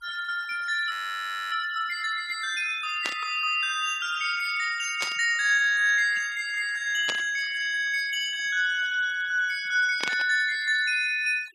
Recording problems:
noise reduction artefacts; signal-to-artefact ratio 20 dB
audio freezing; at 1 s for 0.5 s
static burst; 4 times, first at 3 s; peak 0 dB vs average level

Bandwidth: 15.5 kHz